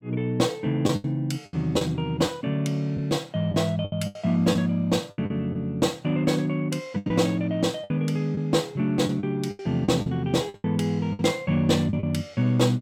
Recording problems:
lost packets; 9% of the sound replaced, filled with the last packet

